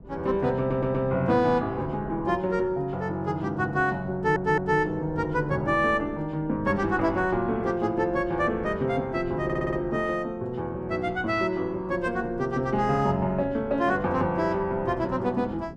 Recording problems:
wind on the microphone; below 280 Hz, SNR 17 dB
audio stuttering; at 0.5 s, at 4 s and at 9.5 s

